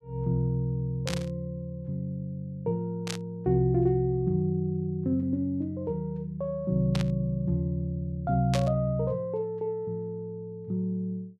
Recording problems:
burst of static; 4 times, first at 1 s; peak +1 dB vs average level

